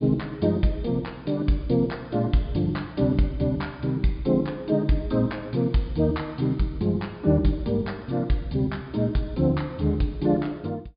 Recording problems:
low-pass filter; nothing above 4.9 kHz

